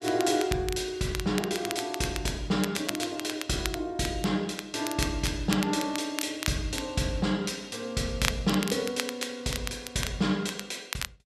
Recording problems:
crackling; vinyl, SNR 7 dB

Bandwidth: 13 kHz